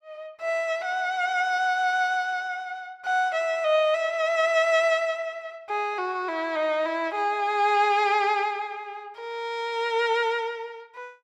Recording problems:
none

